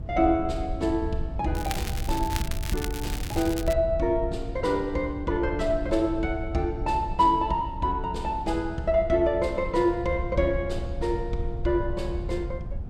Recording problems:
wind noise; below 88 Hz, SNR 8 dB
crackle; from 1.5 to 3.5 s; loose cable, SNR 11 dB

